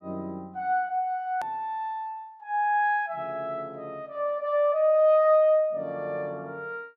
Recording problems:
edit click; at 1.5 s

